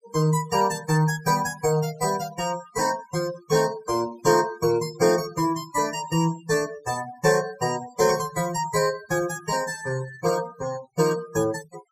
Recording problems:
noise reduction artefacts; signal-to-artefact ratio 17 dB

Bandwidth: 14.5 kHz